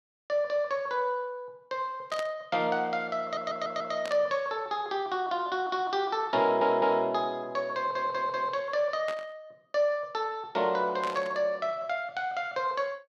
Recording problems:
burst of static; 4 times, first at 2 s; peak -6 dB vs average level
audio stuttering; at 3 s, at 6.5 s and at 8 s

